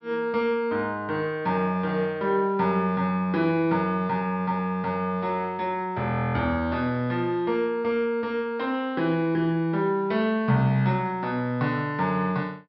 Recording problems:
treble missing; nothing above 5.4 kHz

